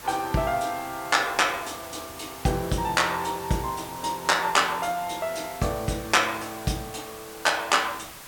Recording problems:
hiss; SNR 15 dB

